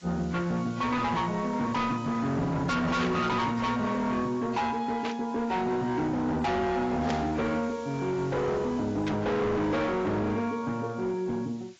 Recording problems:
lossy codec; AAC, log-spectral distance 4 dB, nothing above 7.3 kHz
distortion; hard clipping, signal-to-distortion ratio 7 dB
hiss; SNR 24 dB
burst of static; 4 times, first at 3 s; peak -4 dB vs average level

